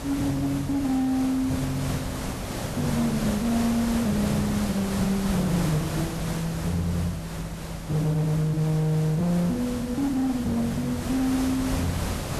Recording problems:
distortion; hard clipping, signal-to-distortion ratio 11 dB
electrical hum; 50 Hz, harmonics up to 550 Hz, SNR 19 dB
background hiss; slope -5 dB per octave, SNR 7 dB

